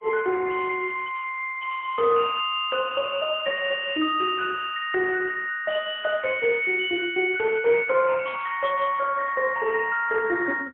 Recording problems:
telephone audio; 130 Hz to 3.2 kHz, AMR-NB, then MP3

